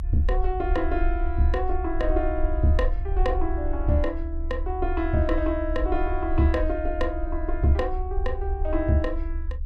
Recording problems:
rumble; below 60 Hz, strongest tone 28 Hz, SNR 3 dB

